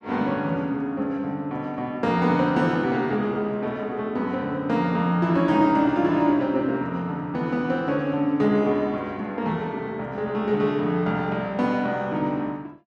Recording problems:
none

